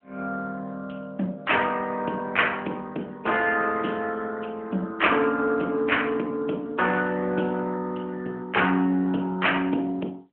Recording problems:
telephone audio; 220 Hz to 3.3 kHz, AMR-NB

